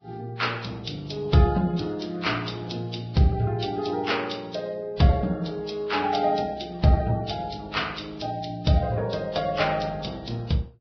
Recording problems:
lossy codec; Vorbis, then Vorbis, log-spectral distance 5 dB, nothing above 5.5 kHz

